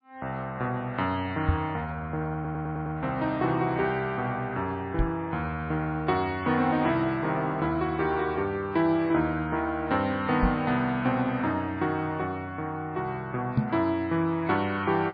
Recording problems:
codec artefacts; MP3, log-spectral distance 2 dB, nothing above 4.2 kHz
microphone thump; 4 times, first at 1.5 s; peak +6 dB vs average level
audio stuttering; at 2.5 s

